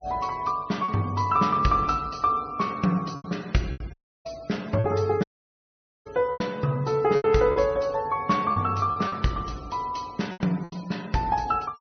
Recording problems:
treble cut off; nothing above 6.1 kHz
noise reduction artefacts; signal-to-artefact ratio 23 dB
packet loss; 7% of the sound replaced, filled with repeated pitch periods
dropout; at 4 s and at 5 s for 1 s

